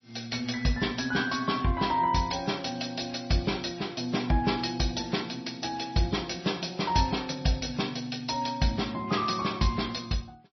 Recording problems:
codec artefacts; MP3, log-spectral distance 6 dB, nothing above 5.8 kHz

